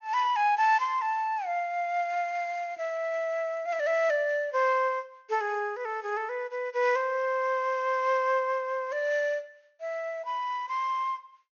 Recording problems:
treble missing; nothing above 6.7 kHz

